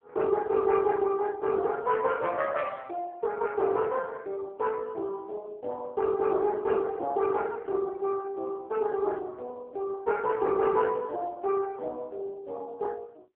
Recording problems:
telephone audio; 300 Hz to 2.6 kHz, AMR-NB

